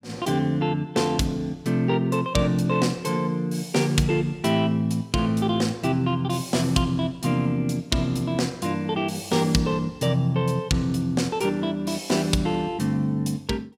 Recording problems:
none

